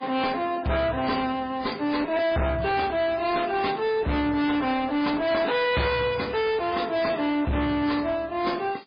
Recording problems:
lossy codec; AAC, then MP3, log-spectral distance 4 dB
distorted audio; hard clipping, signal-to-distortion ratio 6 dB

